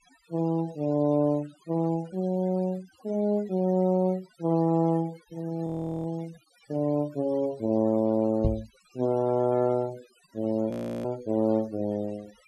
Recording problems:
denoising artefacts; signal-to-artefact ratio 23 dB
frozen audio; at 5.5 s and at 11 s
microphone bump; at 8.5 s; peak +4 dB vs average level

